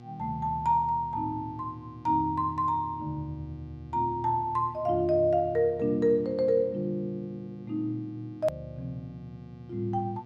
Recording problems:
hum; 60 Hz, harmonics up to 1.2 kHz, SNR 19 dB
hard cut with a click; at 8.5 s

